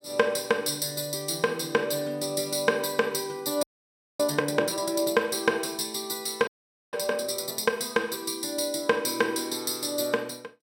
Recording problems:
frozen audio; at 3.5 s for 0.5 s and at 6.5 s

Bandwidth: 16.5 kHz